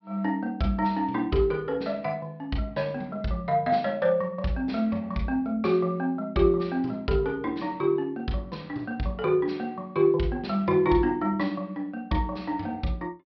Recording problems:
low-pass filter; nothing above 5.5 kHz

